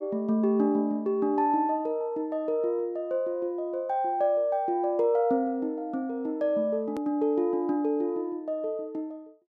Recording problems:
edit click; at 7 s

